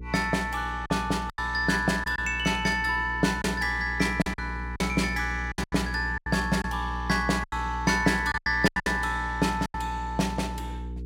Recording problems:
hum; 60 Hz, harmonics up to 480 Hz, SNR 10 dB
packet loss; 9% of the sound replaced, filled with silence

